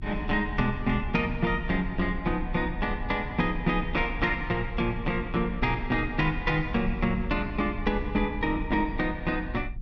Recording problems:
rumble; below 64 Hz, SNR 9 dB

